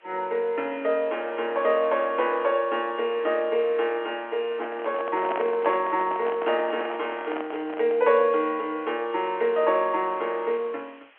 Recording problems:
phone line; 300 Hz to 3.2 kHz, G.711
background hiss; SNR 29 dB
handling noise; from 4.5 to 8 s; peak -1 dB vs average level

